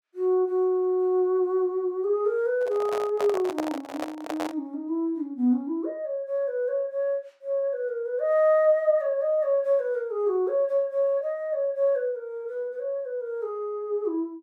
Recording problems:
handling noise; from 2.5 to 4.5 s; peak -1 dB vs average level

